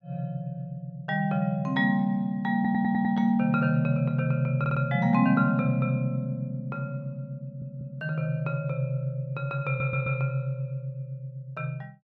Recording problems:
audio stuttering; 4 times, first at 2.5 s

